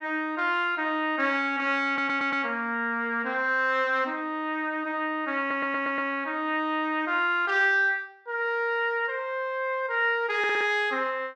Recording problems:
stutter; at 2 s, at 5.5 s and at 10 s

